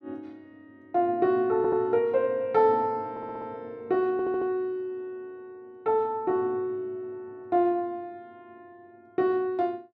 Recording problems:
audio stuttering; at 1.5 s, at 3 s and at 4 s

